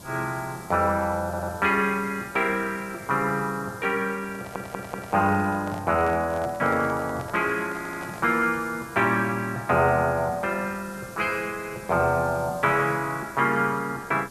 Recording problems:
background hiss; SNR 19 dB
stutter; at 1 s, at 4.5 s and at 8 s
microphone handling noise; from 4 to 8.5 s; peak -10 dB vs average level

